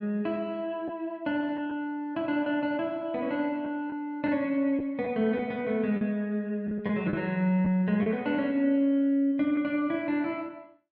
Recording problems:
lost packets; 3% of the sound replaced, filled with the last packet

